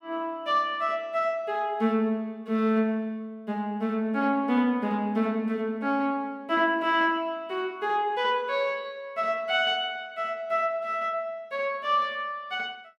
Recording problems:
none

